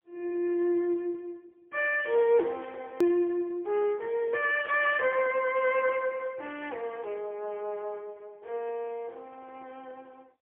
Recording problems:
phone line; 300 Hz to 3.5 kHz, AMR-NB, then MP3
click at an edit; at 3 s

